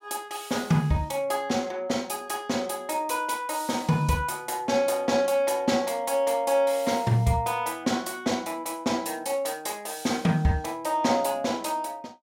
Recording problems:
none

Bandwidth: 16 kHz